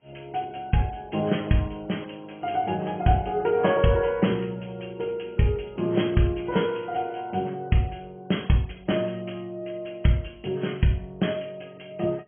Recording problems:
treble cut off; nothing above 3.3 kHz
codec artefacts; AAC, log-spectral distance 6 dB

